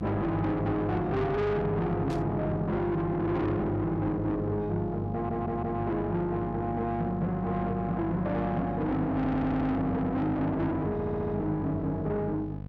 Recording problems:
distorted audio; soft clipping, signal-to-distortion ratio 7 dB
hum; 50 Hz, harmonics up to 800 Hz, SNR 8 dB
static burst; at 2 s; peak -13 dB vs average level
stutter; at 5 s, at 9 s and at 11 s

